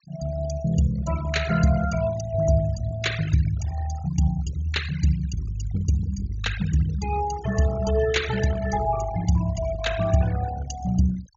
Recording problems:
treble missing; nothing above 7.2 kHz
denoising artefacts; signal-to-artefact ratio 13 dB

